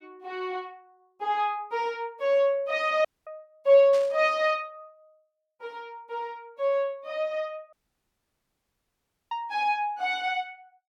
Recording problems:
audio cutting out; at 3 s and at 7.5 s for 1.5 s
static burst; at 4 s; peak -11 dB vs average level

